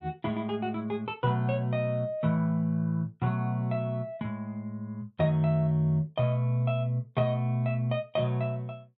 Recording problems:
none

